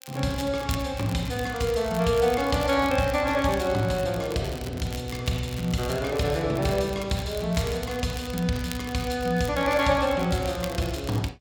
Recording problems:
crackle; vinyl, SNR 16 dB

